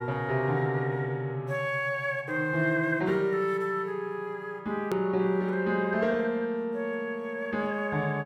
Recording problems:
edit click; at 5 s

